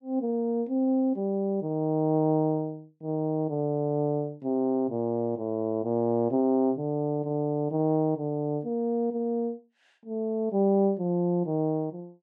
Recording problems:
none

